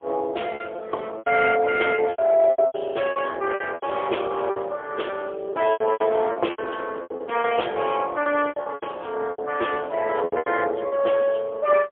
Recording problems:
telephone audio; 340 Hz to 3.4 kHz, AMR-NB, then MP3
packet loss; 15% of the sound replaced, filled with repeated pitch periods

